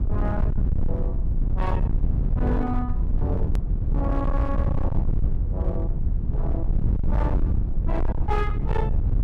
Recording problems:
distortion; hard clipping, signal-to-distortion ratio 7 dB
rumble; below 92 Hz, SNR -6 dB
hard cut with a click; at 3.5 s

